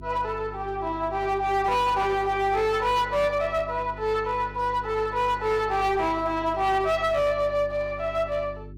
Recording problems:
distorted audio; hard clipping, uneven, signal-to-distortion ratio 11 dB
electrical hum; 50 Hz, harmonics up to 400 Hz, SNR 17 dB

